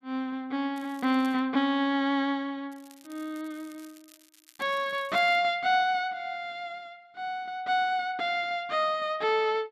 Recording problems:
crackling; at 1 s and from 2.5 to 5.5 s; loose cable, SNR 27 dB

